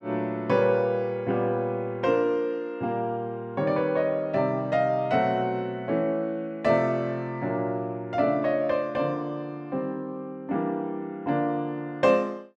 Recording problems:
none

